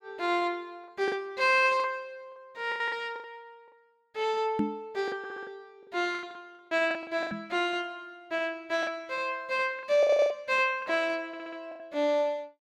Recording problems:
lost packets; 9% of the sound replaced, filled with the last packet
microphone thump; at 4.5 s and at 7 s; peak +4 dB vs average level
stutter; at 5 s, at 10 s and at 11 s

